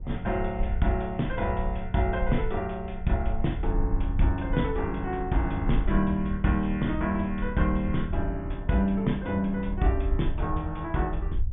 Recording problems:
low-pass filter; nothing above 3.5 kHz
low-frequency rumble; below 62 Hz, SNR 6 dB
wind on the microphone; below 240 Hz, SNR 19 dB

